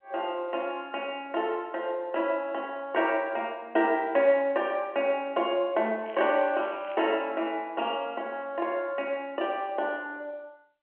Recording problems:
telephone audio; 240 Hz to 3.2 kHz, G.711
crackling; from 6 to 7 s; loose cable, SNR 23 dB

